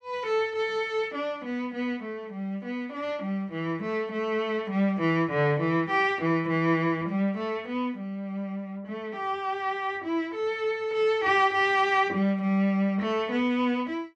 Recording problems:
none

